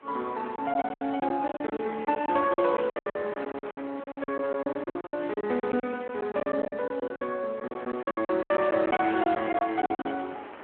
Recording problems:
telephone audio; 240 Hz to 3 kHz, Speex
wind on the microphone; below 1.7 kHz, SNR 18 dB
lost packets; 19% of the sound replaced, filled with silence

